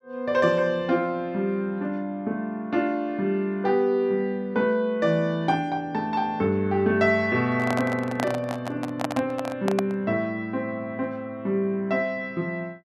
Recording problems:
microphone handling noise; from 7.5 to 10 s; peak +2 dB vs average level

